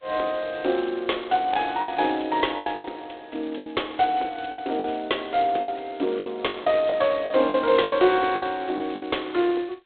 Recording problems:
phone line; 260 Hz to 3.9 kHz, G.726
packet loss; 9% of the sound replaced, filled with the last packet

